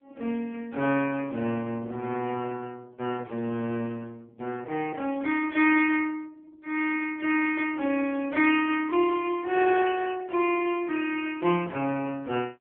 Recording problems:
phone line; 260 Hz to 3.3 kHz, AMR-NB

